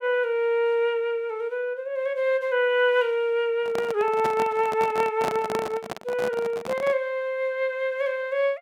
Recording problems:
handling noise; from 3.5 to 7 s; peak -1 dB vs average level

